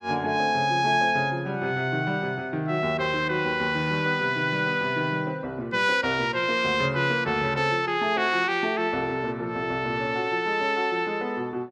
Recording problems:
none

